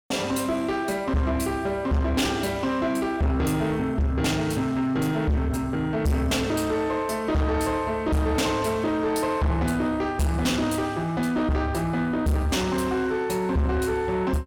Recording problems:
distorted audio; soft clipping, signal-to-distortion ratio 7 dB

